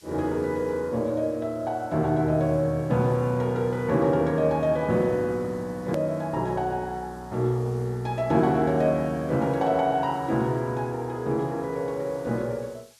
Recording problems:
hiss; slope +4 dB per octave, SNR 29 dB
click at an edit; at 6 s

